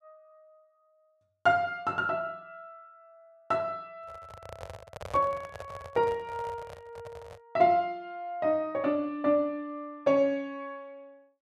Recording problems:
microphone handling noise; from 4 to 7.5 s; peak -7 dB vs average level

